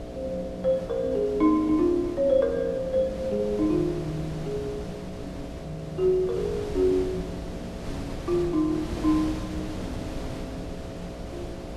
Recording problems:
electrical hum; 60 Hz, harmonics up to 720 Hz, SNR 14 dB
wind on the microphone; below 510 Hz, SNR 12 dB

